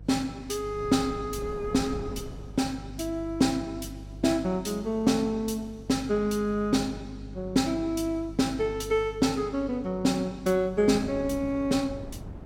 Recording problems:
hum; 50 Hz, harmonics up to 350 Hz, SNR 16 dB
wind noise; below 280 Hz, SNR 19 dB

